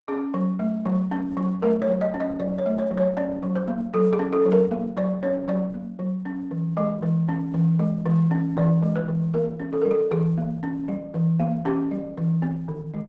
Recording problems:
lossy compression; Opus, log-spectral distance 2 dB, nothing above 7.6 kHz

